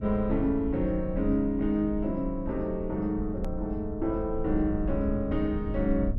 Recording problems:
low-frequency rumble; below 84 Hz, SNR 8 dB
hard cut with a click; at 3.5 s

